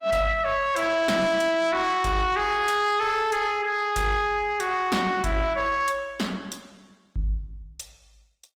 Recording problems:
lossy codec; Opus, log-spectral distance 3 dB, nothing above 19 kHz
distortion; soft clipping, signal-to-distortion ratio 11 dB

